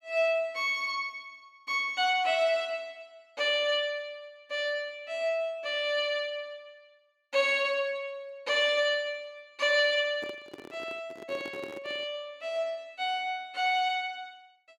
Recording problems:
handling noise; from 10 to 12 s; peak -8 dB vs average level

